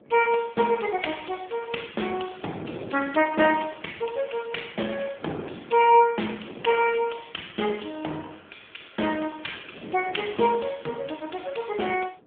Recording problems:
telephone audio; 240 Hz to 3.4 kHz, AMR-NB
wind on the microphone; below 530 Hz, SNR 17 dB

